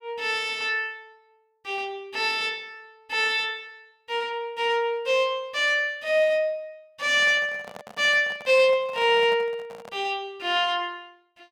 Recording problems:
handling noise; from 7 to 10 s; peak -12 dB vs average level

